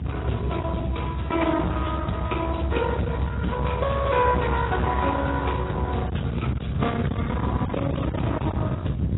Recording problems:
lossy codec; Speex, then AAC, log-spectral distance 4 dB, nothing above 3.8 kHz
distortion; hard clipping, signal-to-distortion ratio 6 dB
rumble; below 250 Hz, SNR 2 dB

